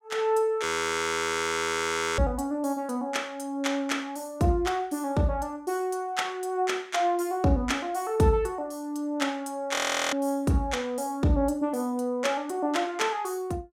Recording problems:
frozen audio; at 0.5 s for 1.5 s and at 10 s

